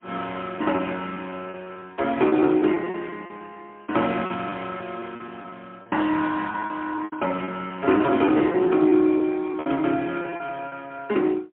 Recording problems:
telephone audio; 220 Hz to 3.4 kHz, AMR-NB, then MP3
lost packets; 13% of the sound replaced, filled with repeated pitch periods

